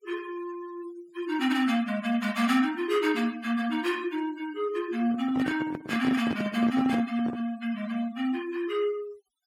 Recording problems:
denoising artefacts; signal-to-artefact ratio 20 dB
microphone handling noise; from 5 to 7.5 s; peak -1 dB vs average level

